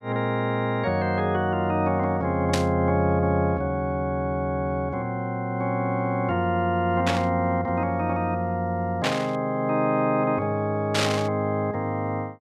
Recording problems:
burst of static; 4 times, first at 2.5 s; peak +3 dB vs average level

